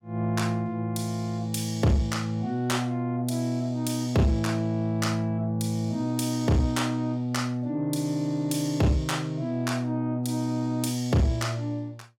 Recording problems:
distortion; soft clipping, signal-to-distortion ratio 11 dB

